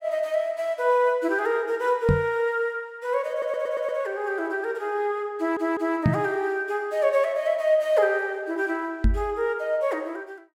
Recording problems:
microphone bump; at 2 s, at 6 s and at 9 s; peak +7 dB vs average level
audio stuttering; at 3.5 s and at 5.5 s

